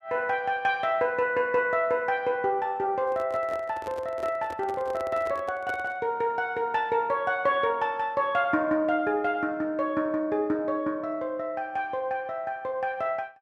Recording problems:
microphone handling noise; from 3 to 6 s; peak -8 dB vs average level

